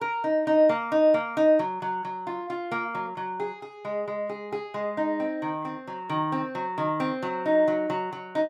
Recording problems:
none

